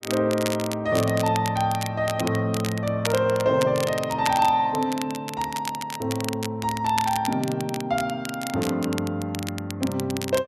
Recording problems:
crackling; vinyl, SNR 10 dB

